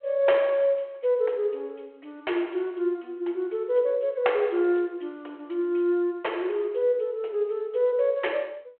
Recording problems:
phone line; 300 Hz to 3.2 kHz, G.726

